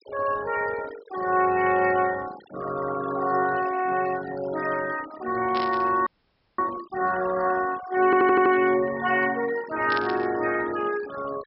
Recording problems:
treble cut off; nothing above 5.4 kHz
denoising artefacts; signal-to-artefact ratio 16 dB
static burst; at 5.5 s and at 10 s; peak -4 dB vs average level
frozen audio; at 6 s for 0.5 s
stutter; at 8 s

